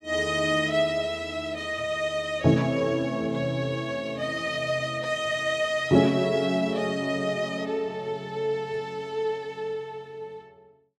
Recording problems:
none

